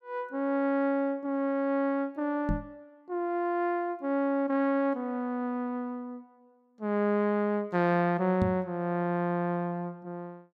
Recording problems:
knock on the microphone; at 2.5 s and at 8.5 s; peak +3 dB vs average level

